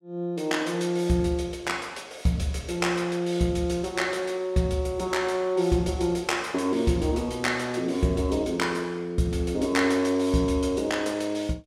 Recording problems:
none

